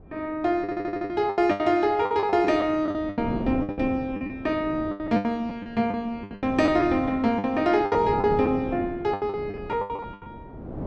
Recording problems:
wind on the microphone; below 390 Hz, SNR 13 dB
packet loss; 17% of the sound replaced, filled with the last packet
audio stuttering; at 0.5 s

